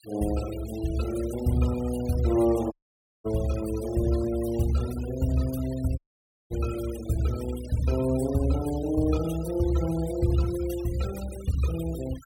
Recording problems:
denoising artefacts; signal-to-artefact ratio 17 dB
dropout; at 2.5 s for 0.5 s and at 6 s for 0.5 s

